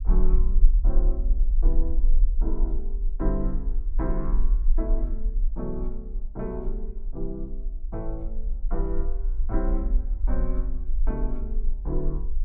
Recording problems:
rumble; below 38 Hz, strongest tone 18 Hz, SNR -7 dB

